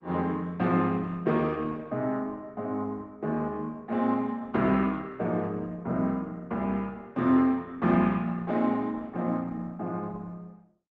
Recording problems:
lossy compression; Opus, log-spectral distance 2 dB

